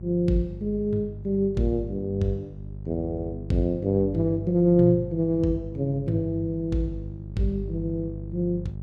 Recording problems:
hum; 50 Hz, harmonics up to 400 Hz, SNR 12 dB

